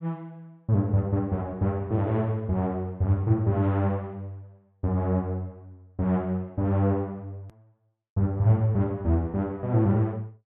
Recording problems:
low-pass filter; nothing above 4 kHz
click at an edit; at 7.5 s

